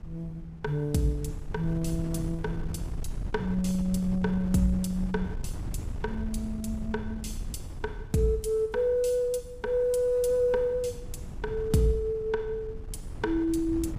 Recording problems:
wind noise; below 110 Hz, SNR 10 dB

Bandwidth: 15 kHz